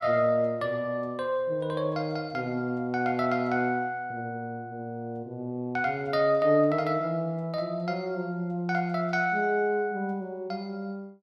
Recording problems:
none

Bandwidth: 12.5 kHz